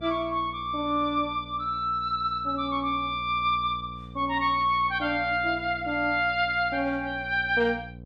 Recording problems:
electrical hum; 60 Hz, harmonics up to 720 Hz, SNR 18 dB

